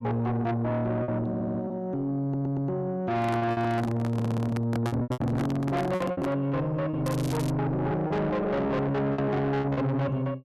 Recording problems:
distortion; soft clipping, signal-to-distortion ratio 7 dB
packet loss; 9% of the sound replaced, filled with repeated pitch periods
audio stuttering; at 1.5 s, at 2 s and at 4 s
handling noise; from 3 to 6.5 s; peak +2 dB vs average level
crackling; at 7 s; loose cable, SNR 13 dB

